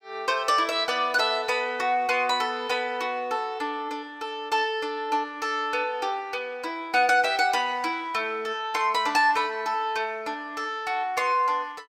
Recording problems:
none

